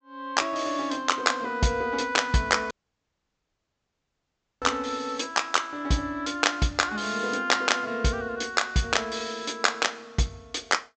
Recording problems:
treble missing; nothing above 8 kHz
dropout; at 2.5 s for 2 s

